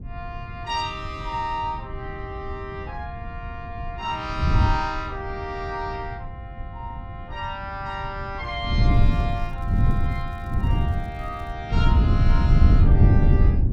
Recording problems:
wind noise; below 120 Hz, SNR -10 dB
crackling; from 9 to 12 s; loose cable, SNR 29 dB

